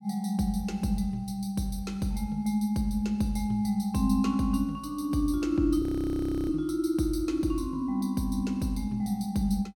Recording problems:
frozen audio; at 6 s for 0.5 s

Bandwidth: 17.5 kHz